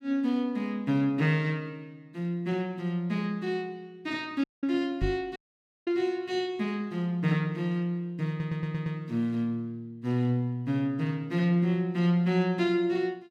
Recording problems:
audio cutting out; at 4.5 s and at 5.5 s for 0.5 s
microphone thump; at 5 s; peak +2 dB vs average level
stutter; at 8.5 s

